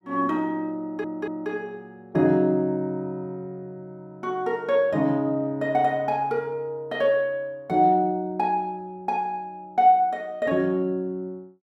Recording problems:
audio stuttering; at 1 s

